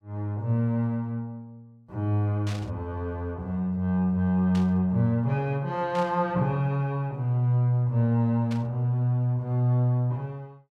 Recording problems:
static burst; 4 times, first at 2.5 s; peak -10 dB vs average level

